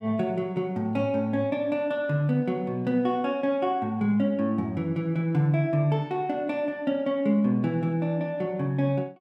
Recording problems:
none

